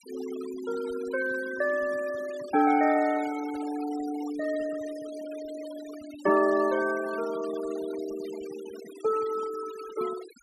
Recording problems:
denoising artefacts; signal-to-artefact ratio 16 dB

